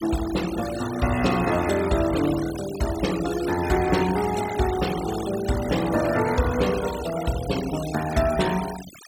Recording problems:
denoising artefacts; signal-to-artefact ratio 12 dB

